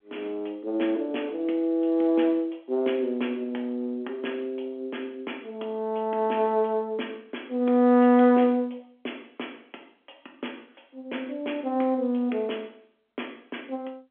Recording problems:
telephone audio; 220 Hz to 3.4 kHz, G.711

